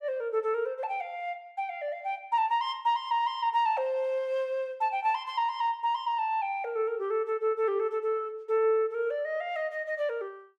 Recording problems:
none

